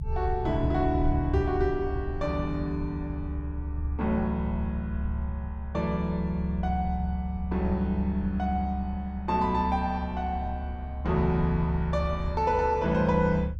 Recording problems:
low-frequency rumble; below 74 Hz, strongest tone 70 Hz, SNR 5 dB

